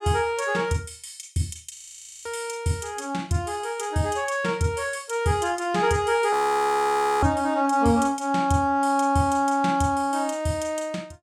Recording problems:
frozen audio; at 2 s and at 6.5 s for 1 s

